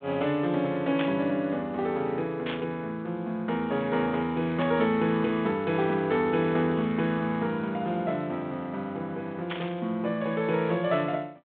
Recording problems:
telephone audio; 130 Hz to 4 kHz, G.726
burst of static; 4 times, first at 1 s; peak -2 dB vs average level

